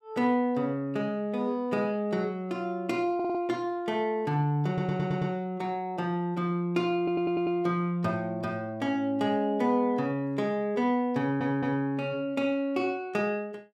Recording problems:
stutter; 4 times, first at 3 s

